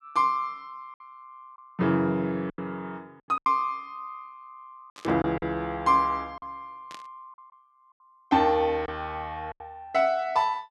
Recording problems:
packet loss; 5% of the sound replaced, filled with silence
burst of static; at 5 s and at 7 s; peak -11 dB vs average level

